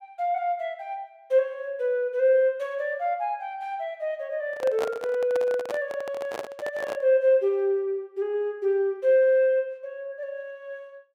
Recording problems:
handling noise; from 4.5 to 7 s; peak -1 dB vs average level

